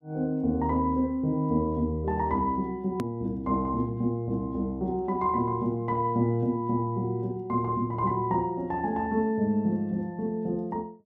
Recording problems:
click at an edit; at 3 s

